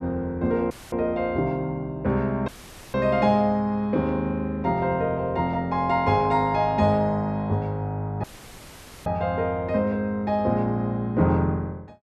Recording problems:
audio cutting out; at 0.5 s, at 2.5 s and at 8 s for 1 s; filled with static

